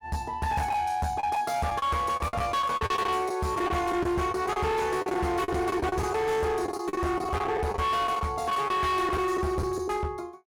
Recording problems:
distortion; hard clipping, uneven, signal-to-distortion ratio 8 dB
lost packets; 11% of the sound replaced, filled with the last packet

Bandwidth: 17.5 kHz